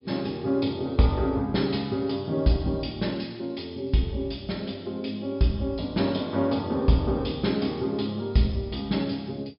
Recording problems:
treble missing; nothing above 5.5 kHz

